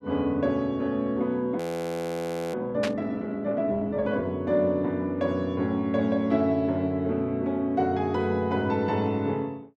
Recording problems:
frozen audio; at 1.5 s for 1 s
static burst; at 3 s; peak -1 dB vs average level

